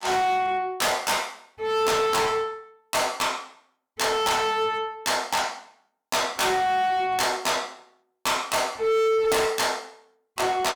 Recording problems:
distorted audio; hard clipping, signal-to-distortion ratio 6 dB

